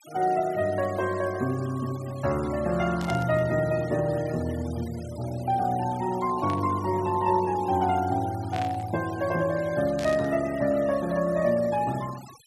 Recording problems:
noise reduction artefacts; signal-to-artefact ratio 19 dB
static burst; 4 times, first at 3 s; peak -7 dB vs average level

